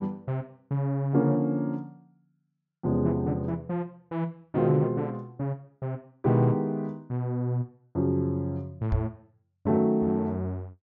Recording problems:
treble cut off; nothing above 7 kHz
knock on the microphone; at 9 s; peak +4 dB vs average level

